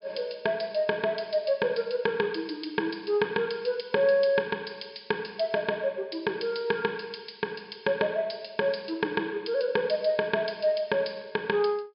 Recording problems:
treble missing; nothing above 5.5 kHz

